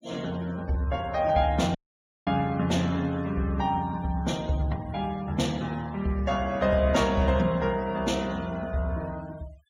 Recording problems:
denoising artefacts; signal-to-artefact ratio 22 dB
dropout; at 2 s for 0.5 s

